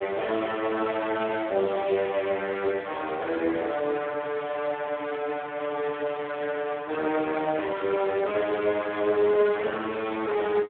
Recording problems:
phone line; 260 Hz to 3.5 kHz, Speex

